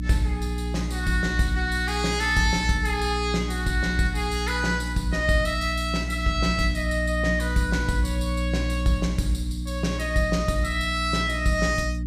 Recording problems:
mains hum; 60 Hz, harmonics up to 300 Hz, SNR 4 dB

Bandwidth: 14.5 kHz